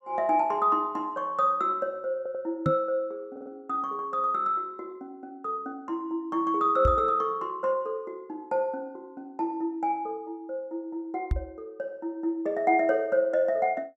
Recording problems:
audio stuttering; at 2 s and at 3.5 s
knock on the microphone; at 2.5 s, at 7 s and at 11 s; peak +4 dB vs average level

